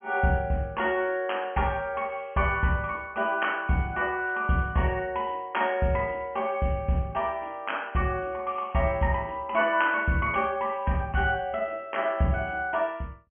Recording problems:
low-pass filter; nothing above 3.2 kHz

